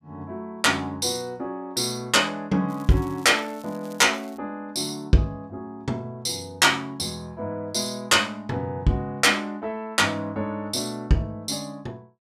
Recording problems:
crackle; from 2.5 to 4.5 s; loose cable, SNR 26 dB

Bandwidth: 15 kHz